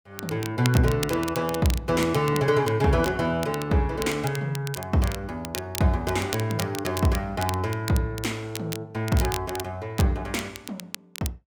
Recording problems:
crackle; vinyl, SNR 12 dB

